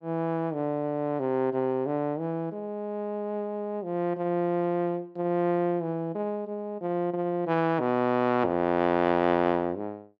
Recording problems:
none

